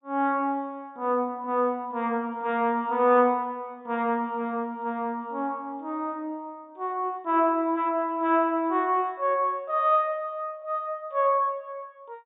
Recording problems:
treble cut off; nothing above 4 kHz

